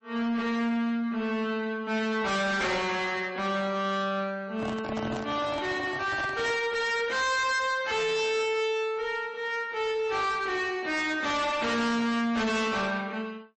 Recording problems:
codec artefacts; MP3, then AAC, log-spectral distance 3 dB, nothing above 8 kHz
distortion; soft clipping, signal-to-distortion ratio 6 dB
microphone handling noise; from 4.5 to 6.5 s; peak -3 dB vs average level

